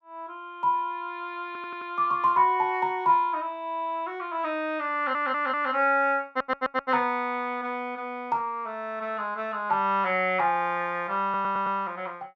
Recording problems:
audio stuttering; 4 times, first at 1.5 s

